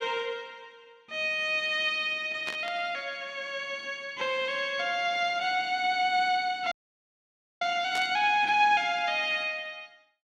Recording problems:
static burst; at 2.5 s and at 8 s; peak -6 dB vs average level
audio cutting out; at 6.5 s for 1 s

